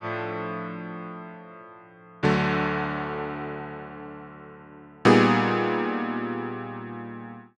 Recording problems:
none

